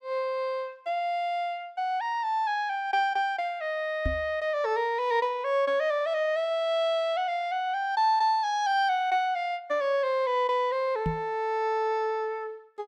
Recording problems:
microphone thump; at 4 s and at 11 s; peak +1 dB vs average level

